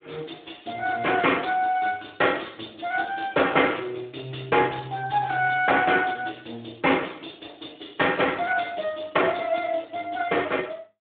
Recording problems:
telephone audio; 220 Hz to 3.5 kHz, Speex

